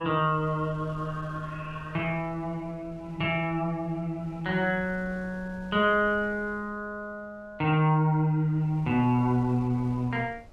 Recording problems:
wind on the microphone; below 380 Hz, SNR 22 dB

